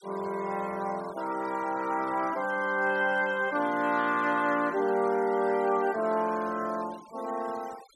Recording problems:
noise reduction artefacts; signal-to-artefact ratio 21 dB

